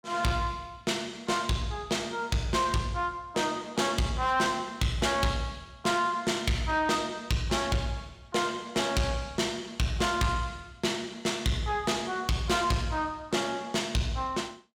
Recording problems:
distorted audio; soft clipping, signal-to-distortion ratio 11 dB

